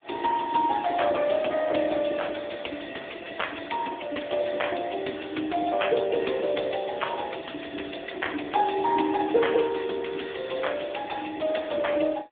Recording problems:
telephone audio; 240 Hz to 3.5 kHz, AMR-NB

